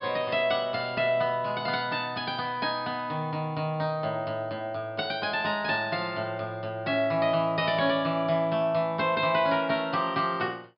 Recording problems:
treble missing; nothing above 5.5 kHz

